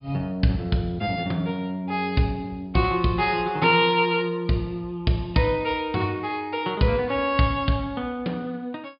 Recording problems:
treble cut off; nothing above 5.1 kHz

